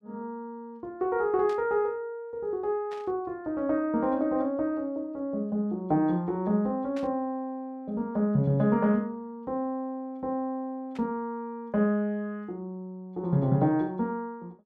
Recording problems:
burst of static; 4 times, first at 1.5 s; peak -12 dB vs average level

